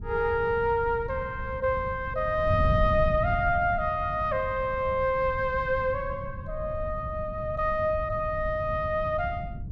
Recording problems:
wind on the microphone; below 130 Hz, SNR 8 dB

